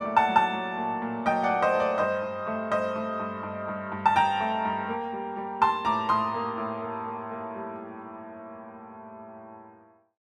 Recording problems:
none

